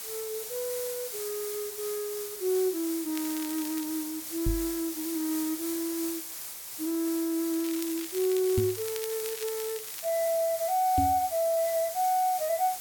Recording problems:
hiss; slope +1 dB per octave, SNR 6 dB
crackling; at 3 s and from 7.5 to 10 s; loose cable, SNR 13 dB
knock on the microphone; at 4.5 s, at 8.5 s and at 11 s; peak +4 dB vs average level

